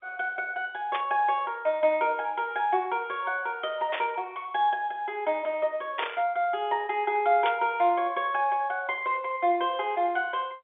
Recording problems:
telephone audio; 320 Hz to 3.7 kHz, G.711
static burst; 4 times, first at 1 s; peak 0 dB vs average level

